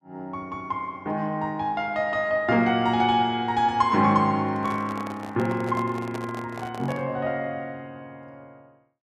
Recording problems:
handling noise; from 4.5 to 7 s; peak -6 dB vs average level

